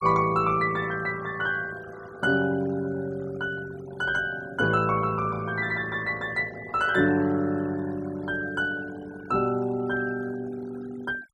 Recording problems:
noise reduction artefacts; signal-to-artefact ratio 19 dB

